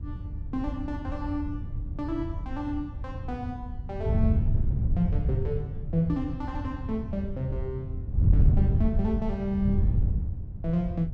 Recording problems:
wind noise; below 110 Hz, SNR -2 dB

